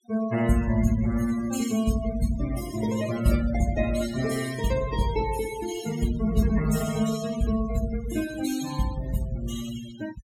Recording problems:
noise reduction artefacts; signal-to-artefact ratio 12 dB

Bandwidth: 17 kHz